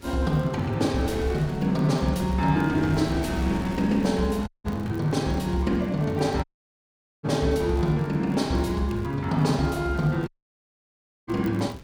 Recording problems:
wind noise; below 560 Hz, SNR 17 dB
crackling; vinyl, SNR 30 dB
dropout; at 4.5 s, at 6.5 s for 1 s and at 10 s for 1 s

